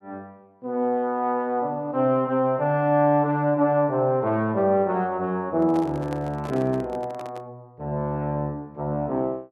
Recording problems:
microphone handling noise; from 5.5 to 7.5 s; peak -9 dB vs average level

